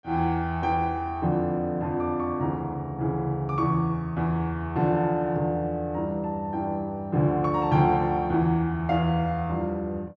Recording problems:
none

